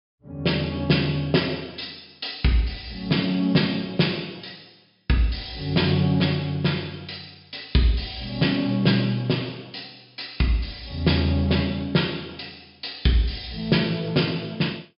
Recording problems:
treble missing; nothing above 5.5 kHz

